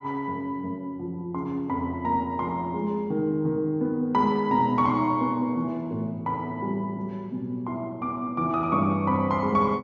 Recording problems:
treble cut off; nothing above 8 kHz

